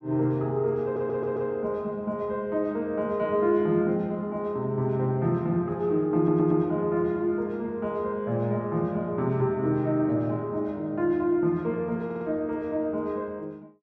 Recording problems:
stutter; at 1 s, at 6 s and at 12 s

